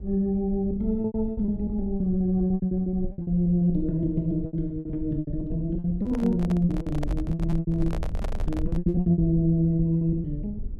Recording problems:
rumble; below 70 Hz, SNR 10 dB
packet loss; 16% of the sound replaced, filled with repeated pitch periods
handling noise; from 6 to 9 s; peak -5 dB vs average level

